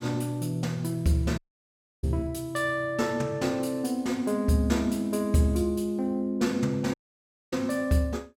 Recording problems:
dropout; at 1.5 s for 0.5 s and at 7 s for 0.5 s

